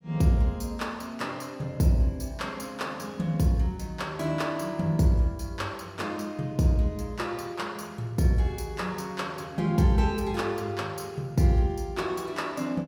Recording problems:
none

